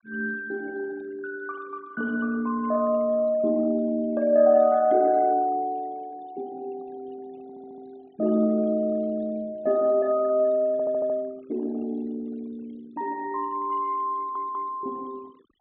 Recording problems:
low-pass filter; nothing above 4 kHz
denoising artefacts; signal-to-artefact ratio 26 dB
audio stuttering; at 7.5 s, at 11 s and at 14 s

